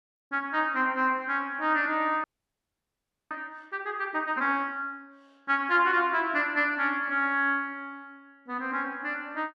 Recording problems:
audio freezing; at 2 s for 1 s

